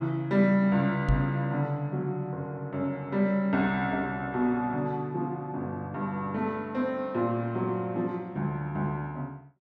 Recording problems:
microphone bump; at 1 s; peak +6 dB vs average level

